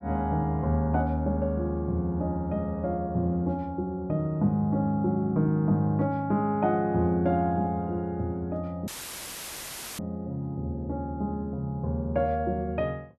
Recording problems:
audio cutting out; at 9 s for 1 s; filled with static

